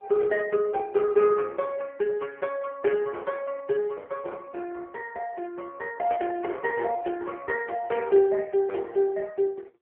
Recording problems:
telephone audio; 300 Hz to 2.9 kHz, AMR-NB

